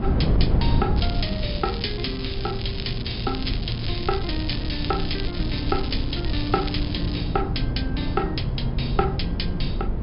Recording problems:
low-pass filter; nothing above 5.5 kHz
wind on the microphone; below 160 Hz, SNR -1 dB
crackle; from 1 to 7 s; loose cable, SNR 7 dB

